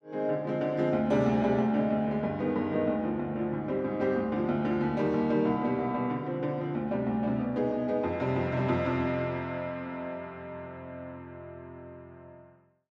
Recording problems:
none

